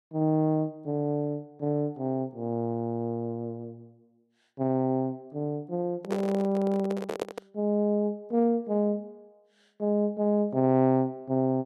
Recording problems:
handling noise; from 6 to 7.5 s; peak +1 dB vs average level

